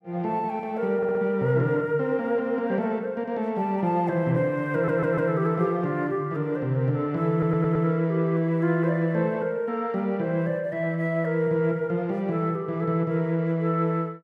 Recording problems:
audio stuttering; at 1 s, at 4.5 s and at 7.5 s

